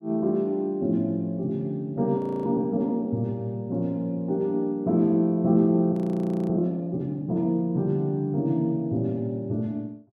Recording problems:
frozen audio; at 2 s and at 6 s for 0.5 s

